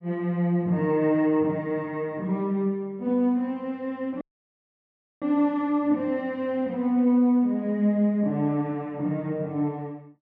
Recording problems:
audio cutting out; at 4 s for 1 s

